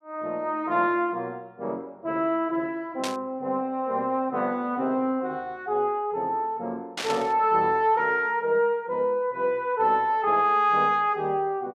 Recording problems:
burst of static; at 3 s and at 7 s; peak -2 dB vs average level

